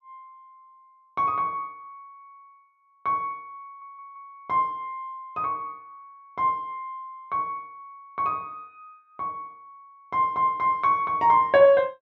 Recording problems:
stutter; at 3.5 s

